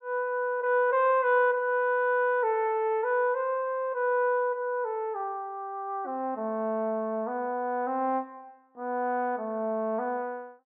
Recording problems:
treble missing; nothing above 4 kHz

